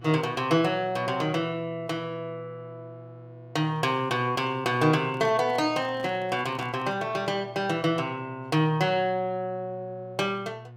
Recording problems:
hum; 60 Hz, harmonics up to 1.1 kHz, SNR 19 dB
microphone handling noise; from 5 to 7 s; peak -11 dB vs average level

